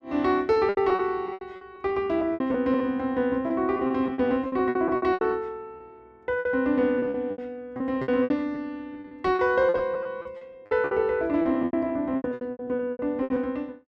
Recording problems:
packet loss; 18% of the sound replaced, filled with repeated pitch periods

